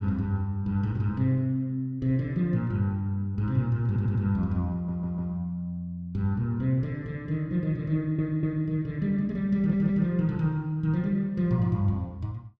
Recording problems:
audio stuttering; 4 times, first at 4 s

